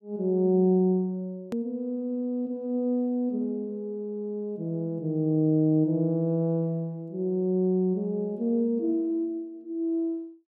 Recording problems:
edit click; at 1.5 s

